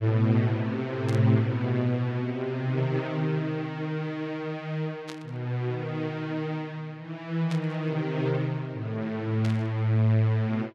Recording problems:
static burst; 4 times, first at 1 s; peak -8 dB vs average level

